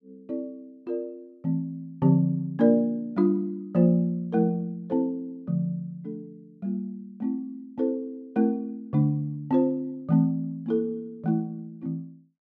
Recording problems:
none

